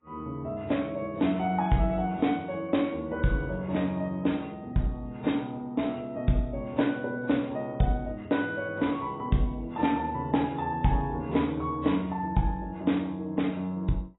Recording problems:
lossy codec; AAC, log-spectral distance 2 dB, nothing above 3.8 kHz

